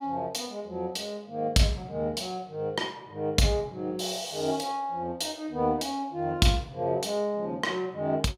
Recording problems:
none

